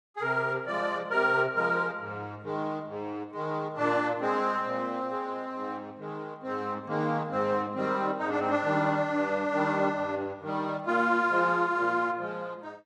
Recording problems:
codec artefacts; AAC, log-spectral distance 2 dB

